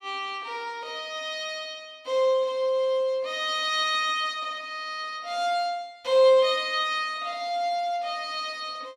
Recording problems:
none

